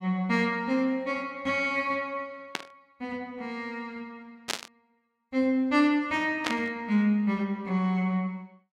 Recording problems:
static burst; at 2.5 s, at 4.5 s and at 6.5 s; peak +3 dB vs average level

